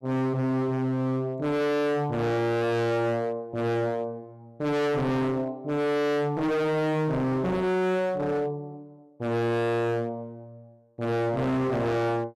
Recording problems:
distorted audio; hard clipping, signal-to-distortion ratio 6 dB

